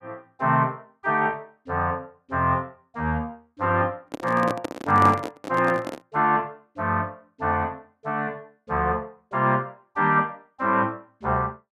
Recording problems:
microphone handling noise; from 4 to 6 s; peak 0 dB vs average level

